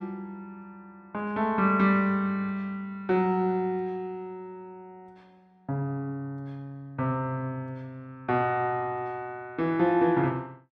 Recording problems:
none

